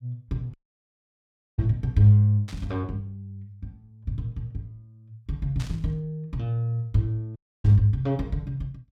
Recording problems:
dropout; at 0.5 s for 1 s and at 7.5 s
static burst; at 2.5 s, at 5.5 s and at 7.5 s; peak -11 dB vs average level

